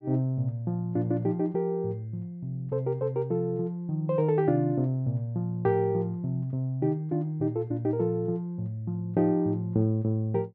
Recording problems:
none

